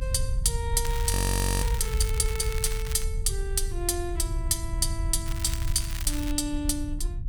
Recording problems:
low-frequency rumble; below 78 Hz, SNR 2 dB
crackle; from 1 to 3 s and from 5.5 to 6.5 s; loose cable, SNR 10 dB
frozen audio; at 1 s for 0.5 s

